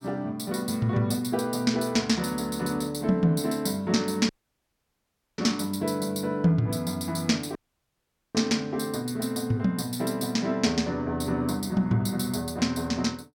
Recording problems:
dropout; at 4.5 s for 1 s and at 7.5 s for 1 s

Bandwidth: 17 kHz